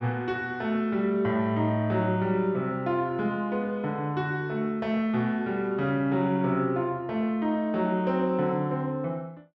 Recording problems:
none

